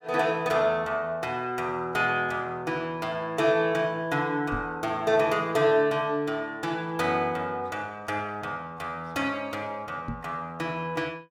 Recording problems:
microphone bump; at 4.5 s and at 10 s; peak -2 dB vs average level

